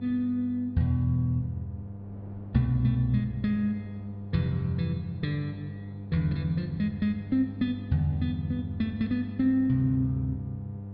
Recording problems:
treble missing; nothing above 5.2 kHz
hum; 50 Hz, harmonics up to 700 Hz, SNR 11 dB
wind on the microphone; below 450 Hz, SNR 27 dB

